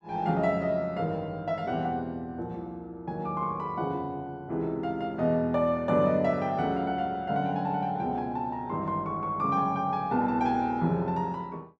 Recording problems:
none

